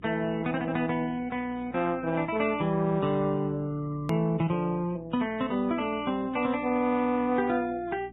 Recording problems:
treble missing; nothing above 4 kHz
lossy compression; Vorbis, log-spectral distance 2 dB
hum; 60 Hz, harmonics up to 360 Hz, SNR 22 dB
click at an edit; at 4 s

